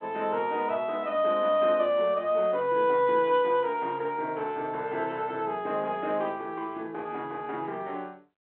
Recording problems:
telephone audio; 280 Hz to 3.4 kHz, G.726

